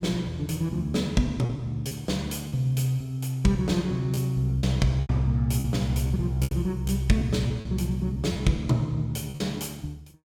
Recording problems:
packet loss; 6% of the sound replaced, filled with repeated pitch periods

